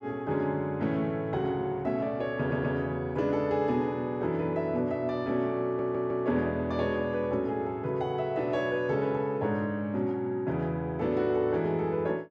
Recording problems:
audio stuttering; at 2.5 s and at 5.5 s

